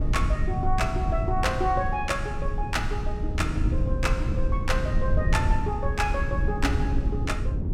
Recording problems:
low-frequency rumble; below 98 Hz, SNR -1 dB

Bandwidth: 16 kHz